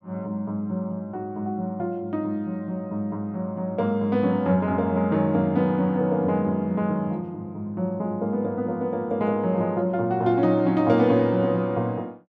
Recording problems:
none

